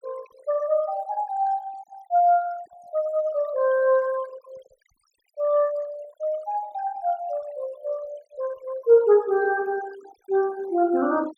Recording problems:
noise reduction artefacts; signal-to-artefact ratio 22 dB

